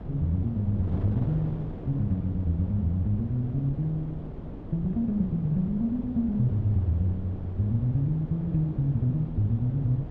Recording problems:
wind on the microphone; below 290 Hz, SNR 11 dB

